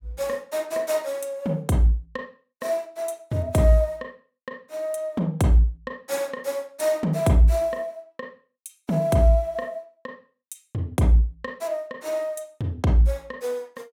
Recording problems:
none

